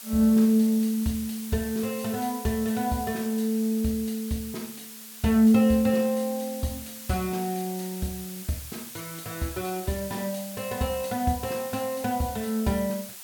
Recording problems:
background hiss; slope +2 dB per octave, SNR 12 dB

